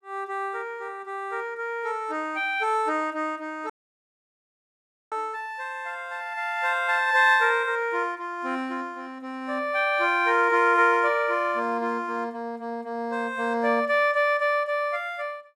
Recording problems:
audio cutting out; at 3.5 s for 1.5 s

